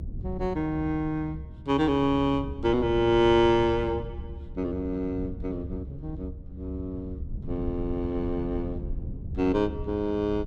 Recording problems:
low-frequency rumble; below 120 Hz, SNR 11 dB

